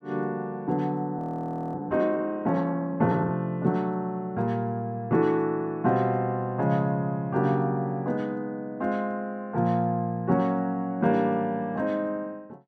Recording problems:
frozen audio; at 1 s for 0.5 s

